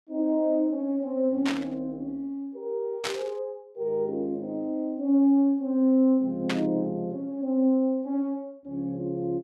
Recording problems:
static burst; at 1.5 s, at 3 s and at 6.5 s; peak +1 dB vs average level

